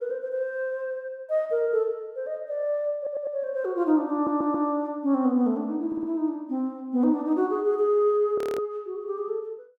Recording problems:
audio stuttering; at 3 s, at 4 s and at 6 s
frozen audio; at 8.5 s

